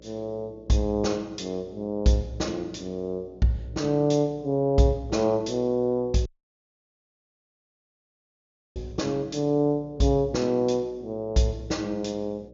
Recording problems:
low-pass filter; nothing above 7.2 kHz
hum; 60 Hz, harmonics up to 600 Hz, SNR 24 dB
dropout; at 6.5 s for 2.5 s

